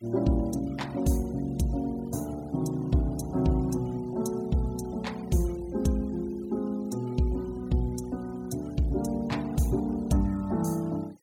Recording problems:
noise reduction artefacts; signal-to-artefact ratio 23 dB

